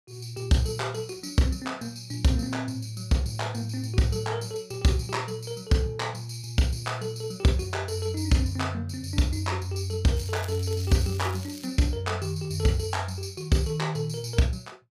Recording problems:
crackle; from 10 to 12 s; loose cable, SNR 18 dB

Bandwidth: 15 kHz